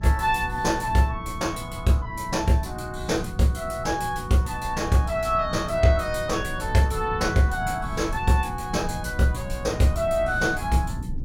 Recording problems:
hum; 60 Hz, harmonics up to 540 Hz, SNR 16 dB
low-frequency rumble; below 130 Hz, SNR 12 dB

